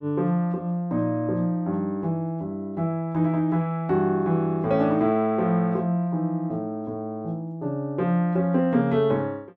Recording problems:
none

